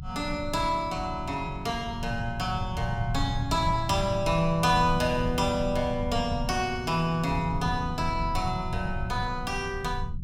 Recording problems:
low-frequency rumble; below 130 Hz, SNR 7 dB

